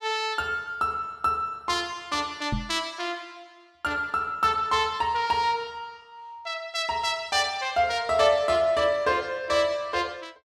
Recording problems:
microphone thump; at 2.5 s; peak 0 dB vs average level

